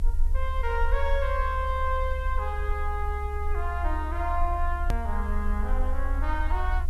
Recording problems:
hum; 60 Hz, harmonics up to 720 Hz, SNR 22 dB
background hiss; slope +1 dB per octave, SNR 27 dB
low-frequency rumble; below 68 Hz, SNR -1 dB
hard cut with a click; at 5 s

